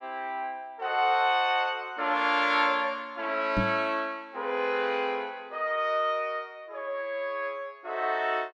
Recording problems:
microphone bump; at 3.5 s; peak +3 dB vs average level

